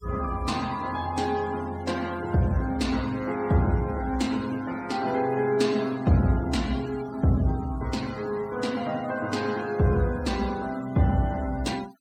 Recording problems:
noise reduction artefacts; signal-to-artefact ratio 18 dB

